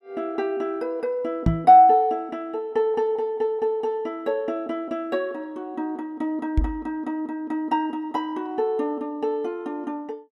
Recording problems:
knock on the microphone; at 1.5 s and at 6.5 s; peak +7 dB vs average level

